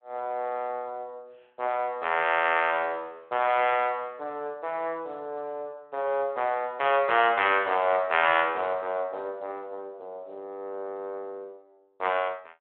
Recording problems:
telephone audio; 340 Hz to 3.4 kHz, Speex

